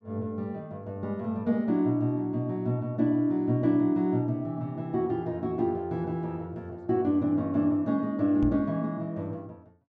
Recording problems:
microphone thump; at 8.5 s; peak +1 dB vs average level

